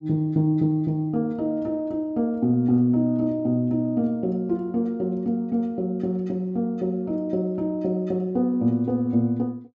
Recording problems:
treble missing; nothing above 8 kHz

